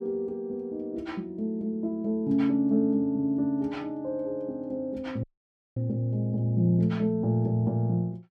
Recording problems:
audio cutting out; at 5 s for 0.5 s

